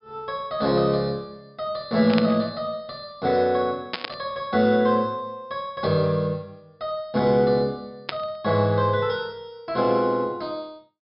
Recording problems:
low-pass filter; nothing above 5.5 kHz
static burst; at 2 s, at 4 s and at 8 s; peak 0 dB vs average level

